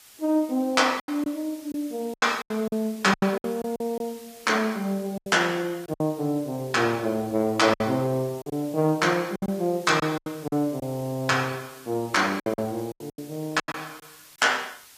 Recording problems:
lossy compression; AAC, log-spectral distance 5 dB
hiss; slope +1 dB per octave, SNR 21 dB
lost packets; 10% of the sound replaced, filled with silence

